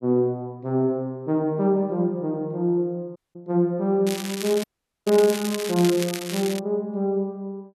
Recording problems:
audio cutting out; at 3 s and at 4.5 s
crackle; from 4 to 6.5 s; loose cable, SNR 10 dB

